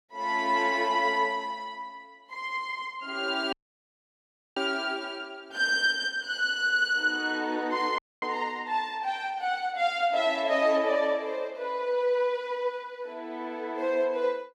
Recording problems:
audio cutting out; at 3.5 s for 1 s and at 8 s

